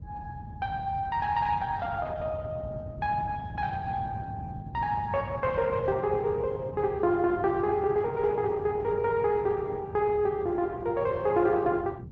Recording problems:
treble cut off; nothing above 8 kHz
codec artefacts; Opus, log-spectral distance 2 dB
wind on the microphone; below 160 Hz, SNR 11 dB

